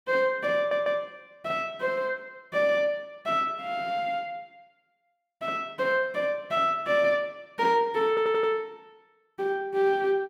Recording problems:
stutter; at 0.5 s and at 8 s

